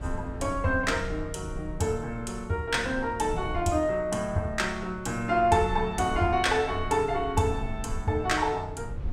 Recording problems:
rumble; below 96 Hz, SNR 12 dB

